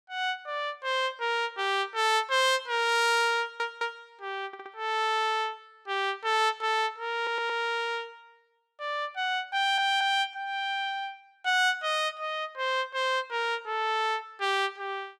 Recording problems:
audio stuttering; 4 times, first at 3.5 s

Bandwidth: 17 kHz